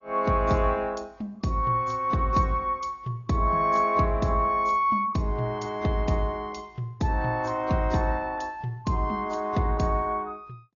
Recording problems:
low-pass filter; nothing above 6.9 kHz
codec artefacts; AAC, log-spectral distance 2 dB

